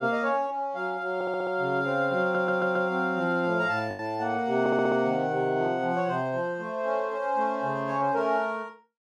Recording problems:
packet loss; 1.1% of the sound replaced, filled with the last packet
audio stuttering; at 1 s, at 2 s and at 4.5 s

